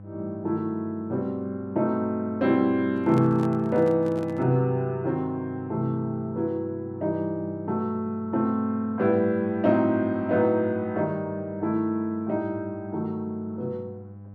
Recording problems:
hum; 50 Hz, harmonics up to 800 Hz, SNR 17 dB
microphone handling noise; from 3 to 4.5 s; peak -5 dB vs average level

